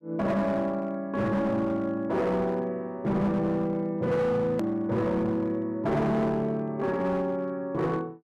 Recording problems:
distorted audio; hard clipping, uneven, signal-to-distortion ratio 11 dB
hard cut with a click; at 4.5 s

